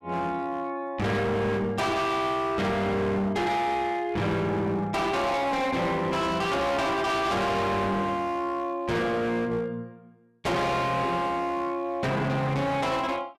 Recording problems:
distortion; hard clipping, signal-to-distortion ratio 7 dB

